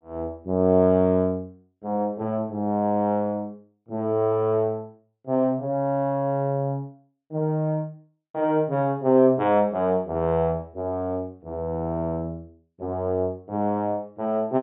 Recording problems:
low-pass filter; nothing above 4 kHz

